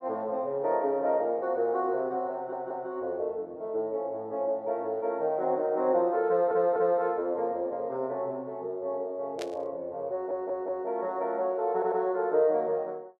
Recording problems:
stutter; 4 times, first at 2.5 s
burst of static; at 9.5 s; peak -7 dB vs average level

